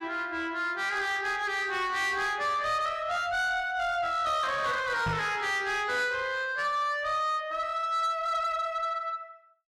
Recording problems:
distortion; soft clipping, signal-to-distortion ratio 11 dB
knock on the microphone; at 5 s; peak +1 dB vs average level

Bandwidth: 14 kHz